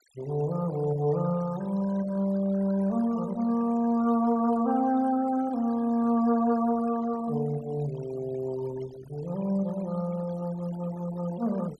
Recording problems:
noise reduction artefacts; signal-to-artefact ratio 19 dB

